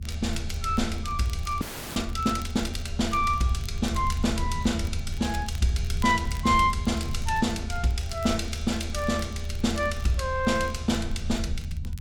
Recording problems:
low-frequency rumble; below 78 Hz, SNR 6 dB
crackling; vinyl, SNR 22 dB
frozen audio; at 1.5 s

